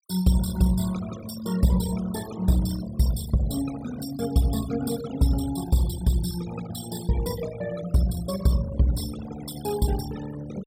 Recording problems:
denoising artefacts; signal-to-artefact ratio 13 dB

